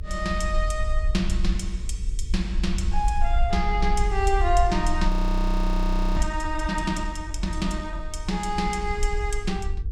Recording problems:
hum; 50 Hz, harmonics up to 450 Hz, SNR 19 dB
rumble; below 52 Hz, SNR 1 dB
frozen audio; at 5 s for 1 s

